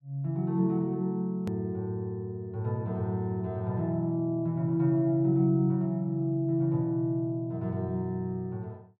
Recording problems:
click at an edit; at 1.5 s

